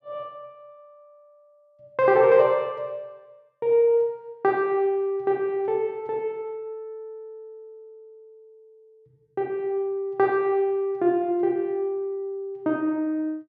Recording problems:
none

